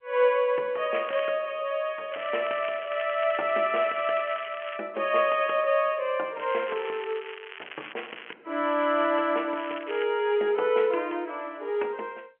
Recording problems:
phone line; 340 Hz to 3.2 kHz, G.711
crackle; 4 times, first at 1 s; loose cable, SNR 15 dB

